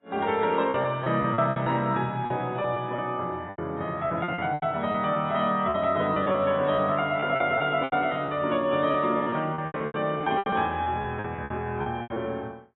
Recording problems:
lossy codec; AAC, log-spectral distance 2 dB, nothing above 3.8 kHz
lost packets; 13% of the sound replaced, filled with repeated pitch periods

